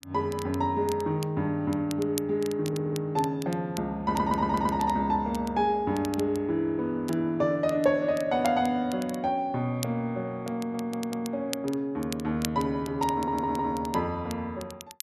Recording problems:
crackling; vinyl, SNR 16 dB
stutter; 4 times, first at 2.5 s

